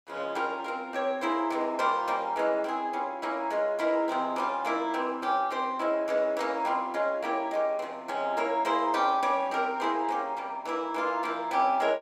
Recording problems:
none

